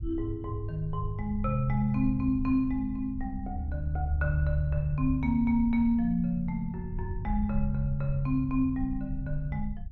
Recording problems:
low-frequency rumble; below 78 Hz, SNR 9 dB

